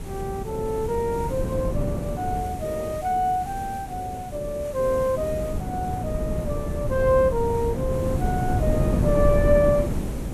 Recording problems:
background hiss; slope -2 dB per octave, SNR 19 dB
wind noise; below 230 Hz, SNR 3 dB

